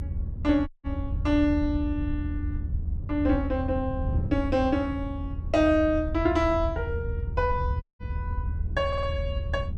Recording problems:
rumble; below 80 Hz, SNR 6 dB
wind noise; below 150 Hz, SNR 11 dB
audio cutting out; at 0.5 s and at 8 s
audio stuttering; at 9 s

